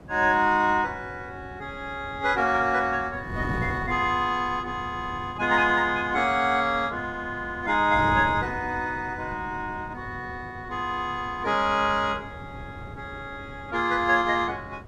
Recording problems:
wind noise; below 340 Hz, SNR 15 dB

